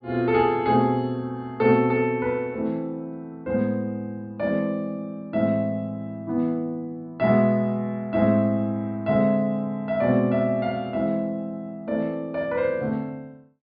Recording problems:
treble cut off; nothing above 4.9 kHz

